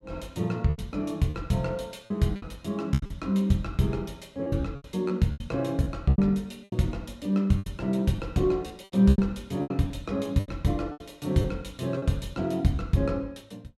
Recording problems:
packet loss; 10% of the sound replaced, filled with repeated pitch periods

